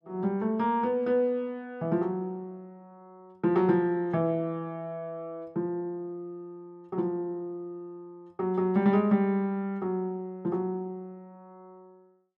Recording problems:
none

